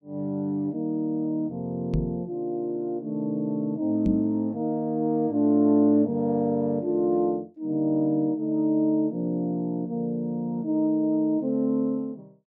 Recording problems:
microphone thump; at 2 s and at 4 s; peak +5 dB vs average level

